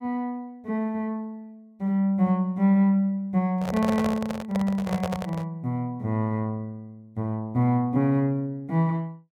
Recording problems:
handling noise; from 3.5 to 5.5 s; peak -1 dB vs average level

